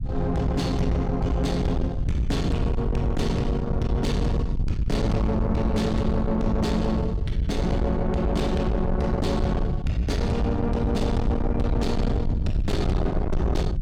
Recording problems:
distorted audio; soft clipping, signal-to-distortion ratio 8 dB
rumble; below 140 Hz, SNR 3 dB

